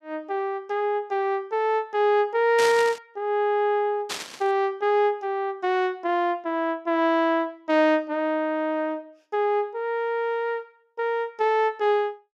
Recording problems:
burst of static; at 2.5 s and at 4 s; peak -1 dB vs average level

